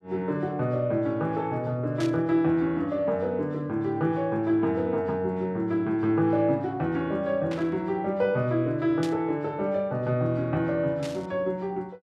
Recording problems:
static burst; 4 times, first at 2 s; peak -7 dB vs average level

